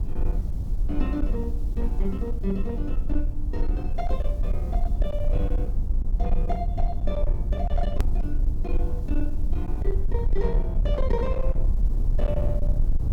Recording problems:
distorted audio; hard clipping, uneven, signal-to-distortion ratio 11 dB
background hiss; slope +1 dB per octave, SNR 28 dB
low-frequency rumble; below 52 Hz, SNR -5 dB
edit click; at 8 s

